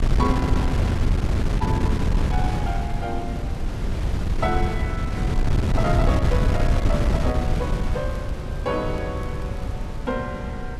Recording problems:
wind on the microphone; below 150 Hz, SNR -5 dB
crackling; from 2.5 to 5 s, from 6.5 to 9 s and at 9 s; loose cable, SNR 25 dB

